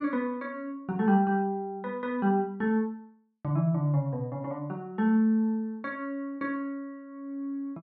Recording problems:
none

